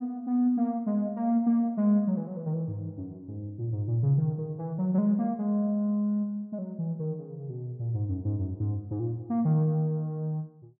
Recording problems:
none

